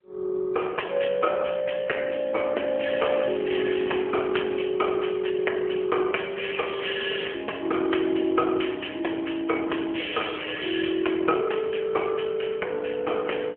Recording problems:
phone line; 300 Hz to 3.2 kHz, AMR-NB

